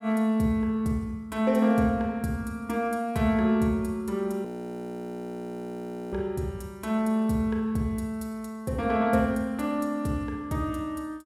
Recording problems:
frozen audio; at 4.5 s for 1.5 s

